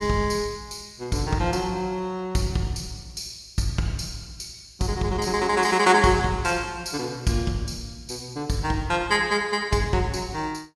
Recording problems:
none

